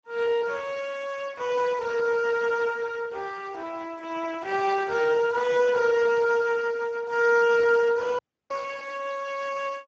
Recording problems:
lossy compression; Speex, log-spectral distance 4 dB
audio cutting out; at 8 s

